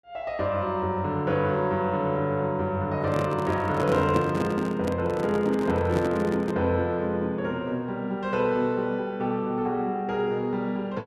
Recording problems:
microphone handling noise; from 3 to 6.5 s; peak +1 dB vs average level

